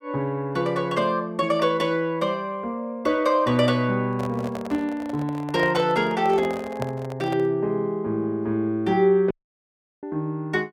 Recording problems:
microphone handling noise; from 4 to 7.5 s; peak -4 dB vs average level
audio cutting out; at 9.5 s for 0.5 s

